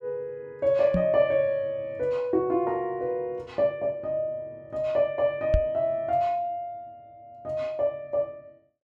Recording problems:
microphone bump; at 1 s and at 5.5 s; peak +6 dB vs average level

